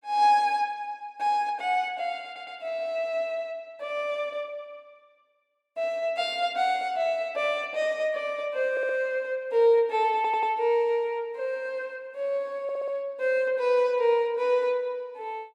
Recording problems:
stutter; 4 times, first at 2.5 s

